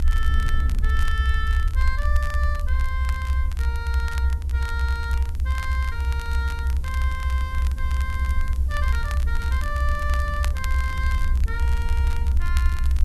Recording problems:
background hiss; SNR 23 dB
rumble; below 68 Hz, strongest tone 64 Hz, SNR -8 dB
wind noise; below 110 Hz, SNR 6 dB
crackle; vinyl, SNR 11 dB

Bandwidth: 13 kHz